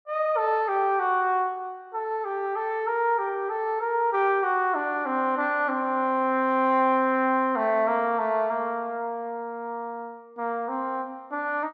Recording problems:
none

